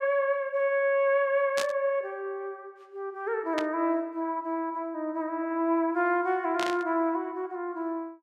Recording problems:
burst of static; at 1.5 s, at 3.5 s and at 6.5 s; peak 0 dB vs average level

